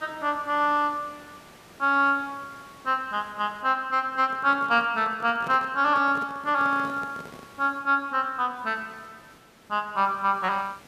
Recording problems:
background hiss; slope -4 dB per octave, SNR 26 dB
handling noise; from 4 to 7.5 s; peak -10 dB vs average level

